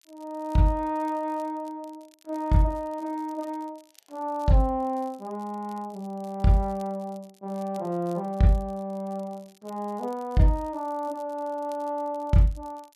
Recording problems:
crackling; vinyl, SNR 29 dB

